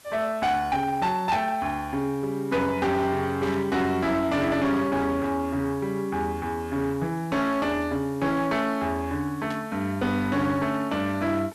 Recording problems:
distorted audio; hard clipping, uneven, signal-to-distortion ratio 12 dB
hiss; slope 0 dB per octave, SNR 25 dB
static burst; at 3.5 s and at 9.5 s; peak -10 dB vs average level

